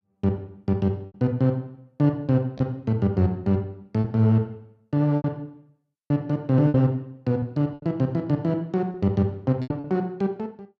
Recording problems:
lost packets; 6% of the sound replaced, filled with repeated pitch periods

